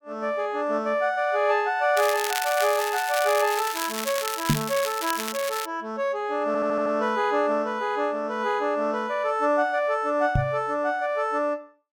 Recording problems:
crackle; from 2 to 5.5 s; loose cable, SNR 7 dB
microphone bump; at 4.5 s and at 10 s; peak +6 dB vs average level
stutter; at 6.5 s

